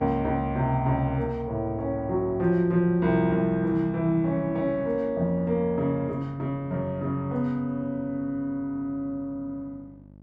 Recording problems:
hum; 50 Hz, harmonics up to 900 Hz, SNR 23 dB

